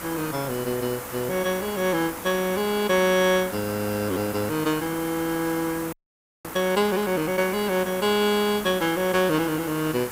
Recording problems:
hiss; SNR 10 dB
audio freezing; at 6 s for 0.5 s

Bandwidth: 15.5 kHz